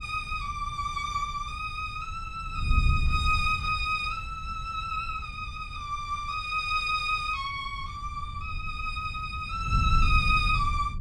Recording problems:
wind on the microphone; below 90 Hz, SNR 5 dB

